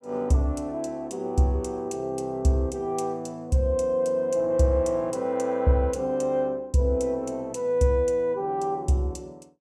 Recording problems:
none

